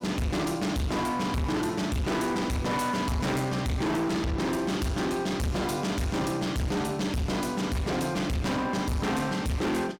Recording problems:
distortion; hard clipping, uneven, signal-to-distortion ratio 6 dB

